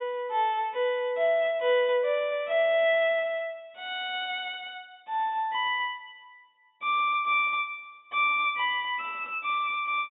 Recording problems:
treble missing; nothing above 4 kHz

